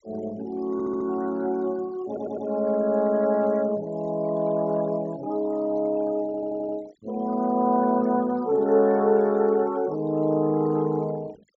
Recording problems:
treble missing; nothing above 8 kHz
denoising artefacts; signal-to-artefact ratio 24 dB
stutter; at 0.5 s, at 2 s and at 6.5 s

